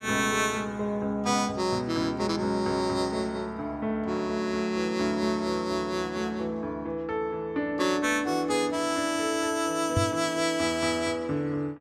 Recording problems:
microphone thump; at 10 s; peak +4 dB vs average level

